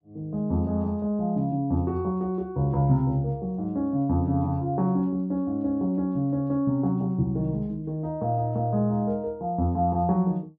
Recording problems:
treble missing; nothing above 8 kHz

